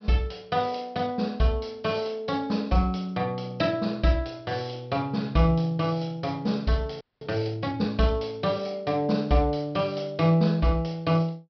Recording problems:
low-pass filter; nothing above 5.5 kHz
frozen audio; at 7 s

